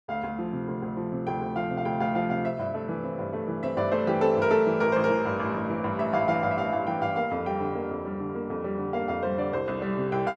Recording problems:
none

